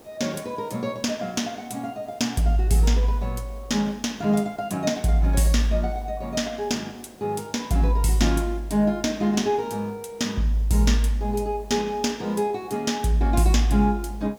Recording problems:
background hiss; SNR 26 dB

